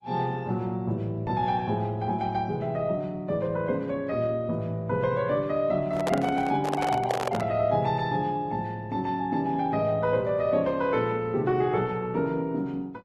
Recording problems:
lossy compression; AAC, then Opus, log-spectral distance 2 dB
handling noise; from 6 to 7.5 s; peak +2 dB vs average level

